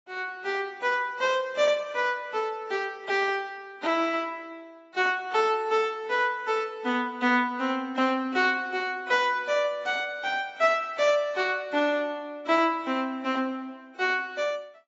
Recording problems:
lossy codec; AAC, log-spectral distance 2 dB, nothing above 7.1 kHz

